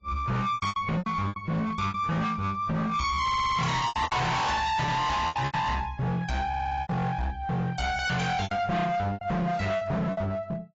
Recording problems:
lossy compression; AAC, log-spectral distance 3 dB, nothing above 7.3 kHz
distortion; hard clipping, uneven, signal-to-distortion ratio 6 dB
packet loss; 11% of the sound replaced, filled with repeated pitch periods
stutter; at 3 s and at 6.5 s

